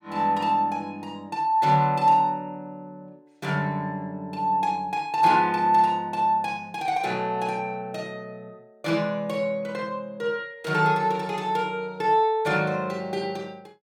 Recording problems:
none

